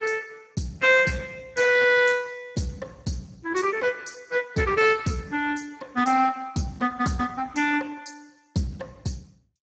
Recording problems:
lossy codec; Speex, log-spectral distance 5 dB, nothing above 7.3 kHz

